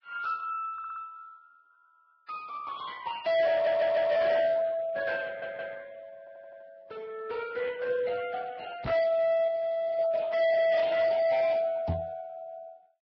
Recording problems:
lossy codec; Speex, then Vorbis, log-spectral distance 3 dB
distortion; hard clipping, signal-to-distortion ratio 10 dB
stutter; 4 times, first at 0.5 s
microphone thump; at 9 s and at 12 s; peak +1 dB vs average level
frozen audio; at 9.5 s for 0.5 s

